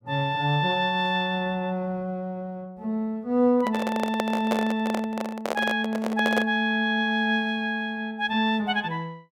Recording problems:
handling noise; from 3.5 to 6.5 s; peak +3 dB vs average level

